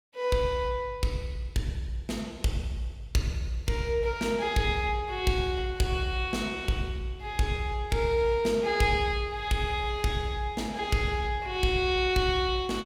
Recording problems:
none

